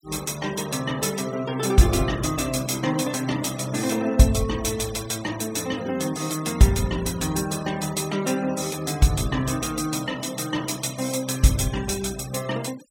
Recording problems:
noise reduction artefacts; signal-to-artefact ratio 17 dB

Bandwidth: 17 kHz